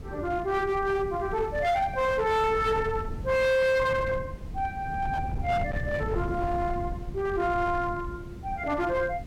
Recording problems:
distorted audio; hard clipping, uneven, signal-to-distortion ratio 10 dB
hiss; slope -5 dB per octave, SNR 27 dB
wind on the microphone; below 170 Hz, SNR 10 dB

